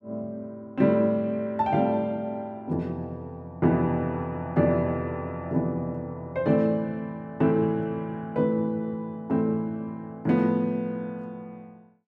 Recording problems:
none

